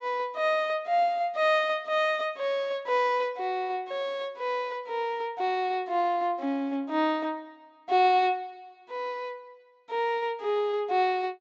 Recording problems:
treble cut off; nothing above 8 kHz

